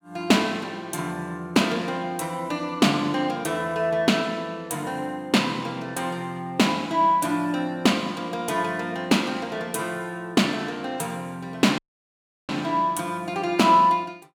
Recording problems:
dropout; at 12 s for 0.5 s

